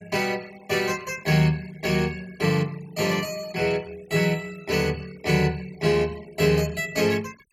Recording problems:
noise reduction artefacts; signal-to-artefact ratio 23 dB

